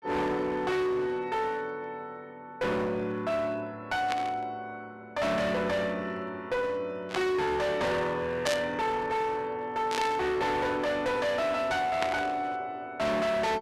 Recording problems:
distortion; hard clipping, uneven, signal-to-distortion ratio 7 dB
static burst; 5 times, first at 4 s; peak +2 dB vs average level

